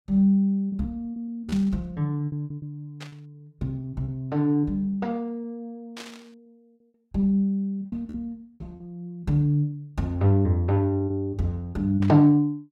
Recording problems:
packet loss; 8% of the sound replaced, filled with repeated pitch periods
static burst; 4 times, first at 1.5 s; peak -10 dB vs average level

